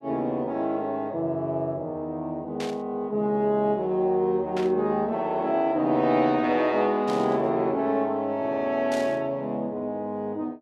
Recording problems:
burst of static; 4 times, first at 2.5 s; peak -8 dB vs average level

